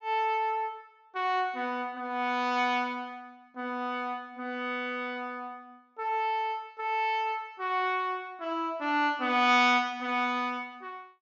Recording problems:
treble missing; nothing above 6.9 kHz

